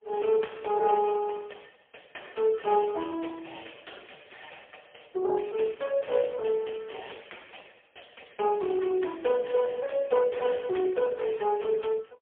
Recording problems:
telephone audio; 240 Hz to 2.5 kHz, AMR-NB, then MP3

